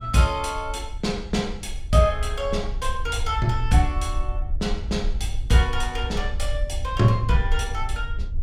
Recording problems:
wind on the microphone; below 60 Hz, SNR 6 dB

